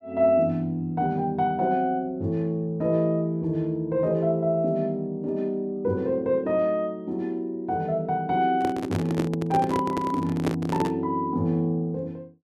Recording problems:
microphone handling noise; from 8.5 to 11 s; peak +2 dB vs average level

